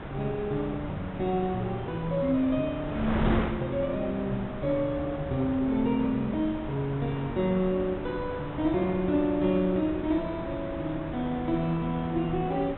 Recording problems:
low-pass filter; nothing above 3.8 kHz
wind noise; below 820 Hz, SNR 8 dB

